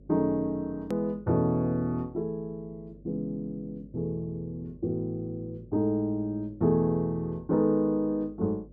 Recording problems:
hum; 50 Hz, harmonics up to 600 Hz, SNR 23 dB
edit click; at 1 s

